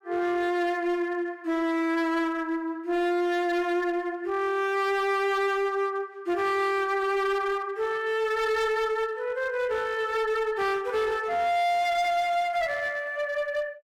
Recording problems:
distortion; hard clipping, uneven, signal-to-distortion ratio 10 dB

